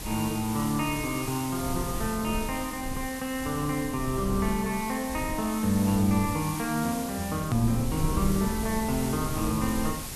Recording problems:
hiss; slope 0 dB per octave, SNR 9 dB
low-frequency rumble; below 170 Hz, SNR 9 dB
hard cut with a click; at 7.5 s

